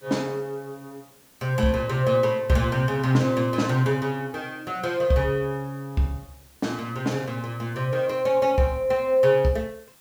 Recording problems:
background hiss; slope -2 dB per octave, SNR 29 dB

